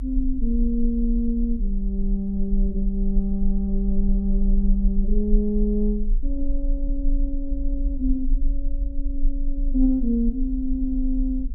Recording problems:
rumble; below 38 Hz, strongest tone 22 Hz, SNR 2 dB

